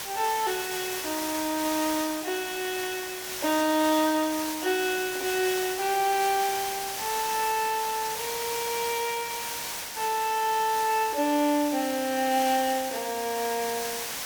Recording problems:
background hiss; slope 0 dB per octave, SNR 5 dB

